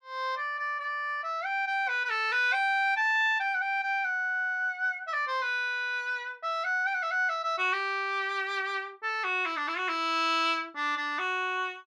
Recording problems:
none

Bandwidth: 14.5 kHz